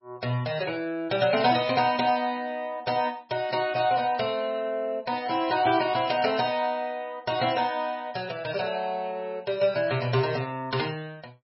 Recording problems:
lossy codec; MP3, log-spectral distance 3 dB, nothing above 5.5 kHz

